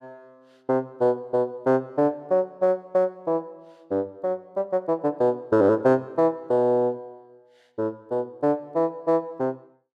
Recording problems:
none

